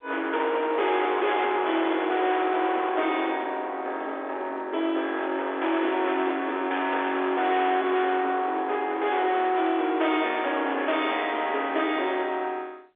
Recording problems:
telephone audio; 280 Hz to 3.6 kHz, G.711
distortion; hard clipping, uneven, signal-to-distortion ratio 7 dB

